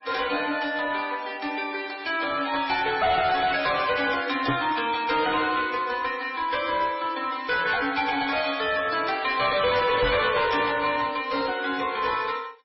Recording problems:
codec artefacts; MP3, log-spectral distance 6 dB, nothing above 5 kHz
distortion; hard clipping, uneven, signal-to-distortion ratio 10 dB
microphone thump; at 4.5 s and at 10 s; peak +1 dB vs average level

